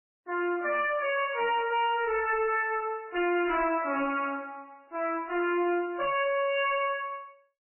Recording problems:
lossy compression; MP3, log-spectral distance 4 dB, nothing above 2.4 kHz
distorted audio; hard clipping, signal-to-distortion ratio 7 dB

